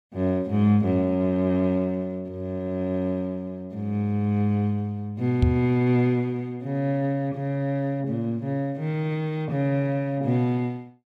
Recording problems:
microphone bump; at 5.5 s; peak +7 dB vs average level

